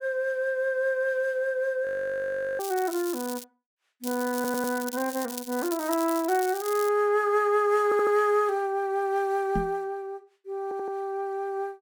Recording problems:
audio freezing; at 2 s for 0.5 s
crackling; at 2.5 s and from 4 to 7 s; loose cable, SNR 11 dB
audio stuttering; at 4.5 s, at 8 s and at 11 s
microphone bump; at 9.5 s; peak 0 dB vs average level

